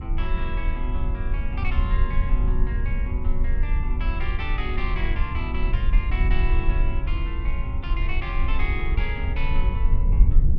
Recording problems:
low-frequency rumble; below 58 Hz, SNR -7 dB

